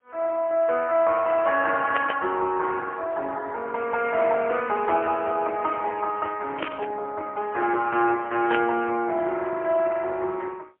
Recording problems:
phone line; 320 Hz to 3.2 kHz, AMR-NB, then MP3
burst of static; at 2 s, at 6.5 s and at 8.5 s; peak +1 dB vs average level

